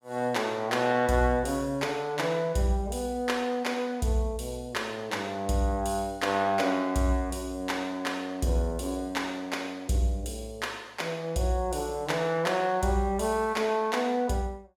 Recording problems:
none

